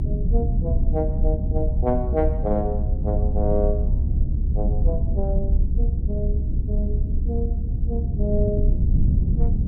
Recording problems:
low-frequency rumble; below 84 Hz, SNR -5 dB

